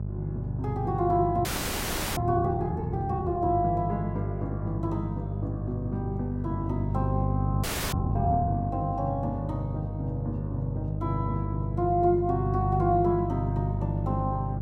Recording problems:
hum; 50 Hz, harmonics up to 450 Hz, SNR 2 dB
audio freezing; at 1.5 s for 0.5 s and at 7.5 s

